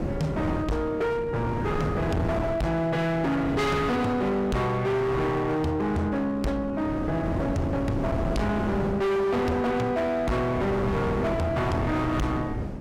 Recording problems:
distortion; hard clipping, signal-to-distortion ratio 7 dB
wind noise; below 410 Hz, SNR 5 dB

